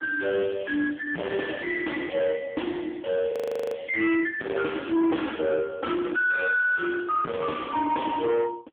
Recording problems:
phone line; 190 Hz to 3.4 kHz, AMR-NB
distortion; soft clipping, signal-to-distortion ratio 4 dB
frozen audio; at 3.5 s

